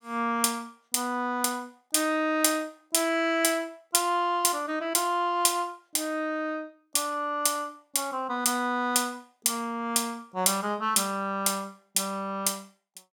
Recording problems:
none

